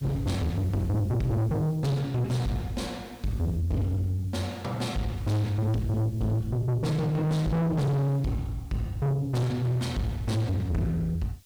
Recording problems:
distorted audio; soft clipping, signal-to-distortion ratio 6 dB
hiss; SNR 28 dB

